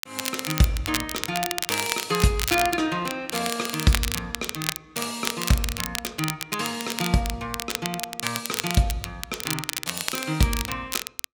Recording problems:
crackle; vinyl, SNR 3 dB

